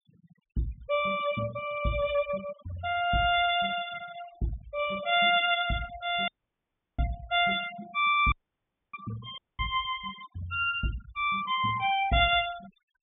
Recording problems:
low-pass filter; nothing above 3.6 kHz
denoising artefacts; signal-to-artefact ratio 16 dB
dropout; at 6.5 s for 0.5 s, at 8.5 s for 0.5 s and at 9.5 s

